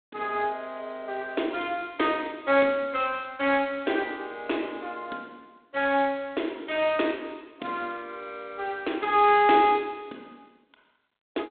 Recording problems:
telephone audio; 220 Hz to 3.9 kHz, G.726

